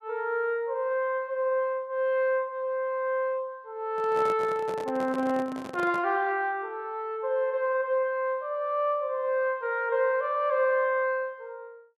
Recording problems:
handling noise; from 4 to 6 s; peak -6 dB vs average level

